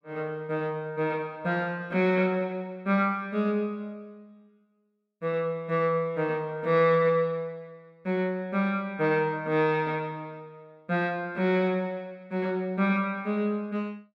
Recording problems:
none

